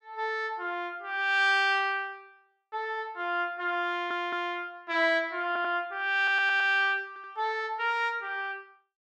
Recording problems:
stutter; 4 times, first at 4 s

